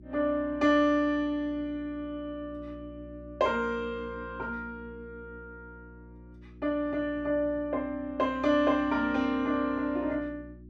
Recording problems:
hum; 60 Hz, harmonics up to 360 Hz, SNR 19 dB

